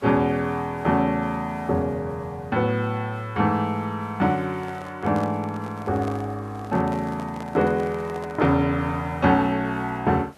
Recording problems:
background hiss; slope -5 dB per octave, SNR 27 dB
microphone handling noise; from 4.5 to 8.5 s; peak -9 dB vs average level

